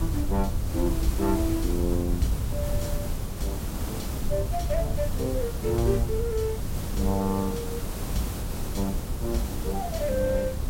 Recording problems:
hiss; SNR 6 dB
wind on the microphone; below 92 Hz, SNR 2 dB

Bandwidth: 16 kHz